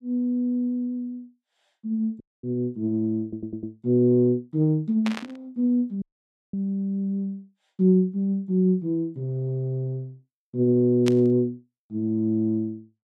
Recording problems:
audio cutting out; at 2 s and at 6 s for 0.5 s
stutter; at 3 s
static burst; at 5 s and at 11 s; peak -3 dB vs average level

